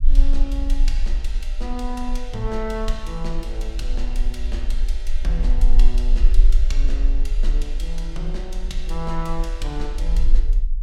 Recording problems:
low-frequency rumble; below 38 Hz, strongest tone 20 Hz, SNR -8 dB

